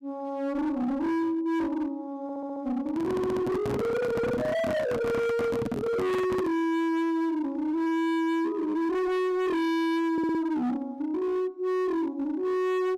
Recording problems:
distortion; hard clipping, signal-to-distortion ratio 6 dB
audio stuttering; at 2 s, at 3 s and at 10 s
microphone handling noise; from 3 to 6.5 s; peak +3 dB vs average level

